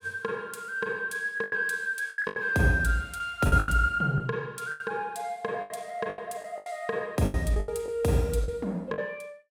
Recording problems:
packet loss; 11% of the sound replaced, filled with the last packet

